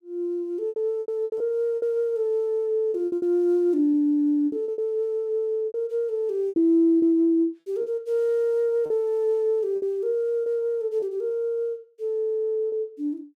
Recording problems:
packet loss; 9% of the sound replaced, filled with repeated pitch periods

